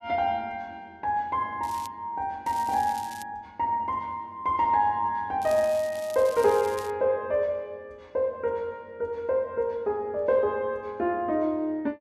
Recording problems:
crackle; at 1.5 s, at 2.5 s and from 5.5 to 7 s; loose cable, SNR 18 dB

